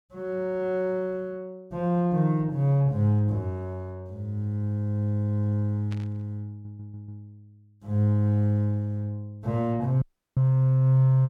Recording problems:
burst of static; at 6 s; peak -15 dB vs average level
stutter; at 6.5 s
audio cutting out; at 10 s

